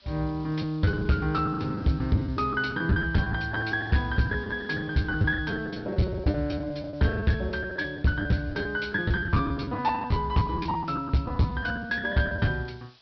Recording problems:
treble cut off; nothing above 5.5 kHz
lossy compression; G.722, log-spectral distance 5 dB
distortion; hard clipping, signal-to-distortion ratio 12 dB
background hiss; slope +2 dB per octave, SNR 30 dB
packet loss; 14% of the sound replaced, filled with the last packet

